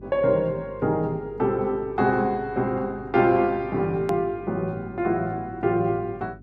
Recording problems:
electrical hum; 50 Hz, harmonics up to 400 Hz, SNR 21 dB
click at an edit; at 4 s

